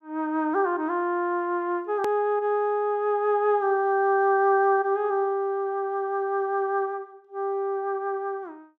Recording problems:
edit click; at 2 s

